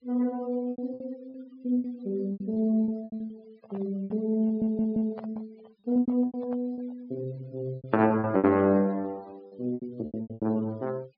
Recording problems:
low-pass filter; nothing above 5.5 kHz
noise reduction artefacts; signal-to-artefact ratio 28 dB
lost packets; 15% of the sound replaced, filled with repeated pitch periods
handling noise; from 3.5 to 7 s; peak -10 dB vs average level
audio stuttering; at 4.5 s

